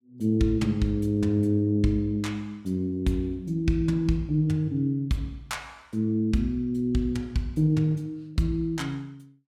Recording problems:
none

